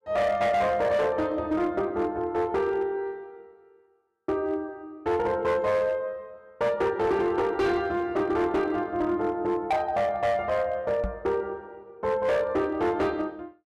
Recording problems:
distortion; hard clipping, signal-to-distortion ratio 12 dB
microphone bump; at 11 s; peak -2 dB vs average level

